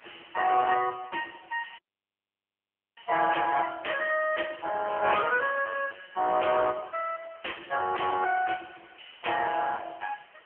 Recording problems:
telephone audio; 340 Hz to 2.7 kHz, AMR-NB
distortion; hard clipping, signal-to-distortion ratio 9 dB
background hiss; SNR 27 dB
audio cutting out; at 2 s for 1 s

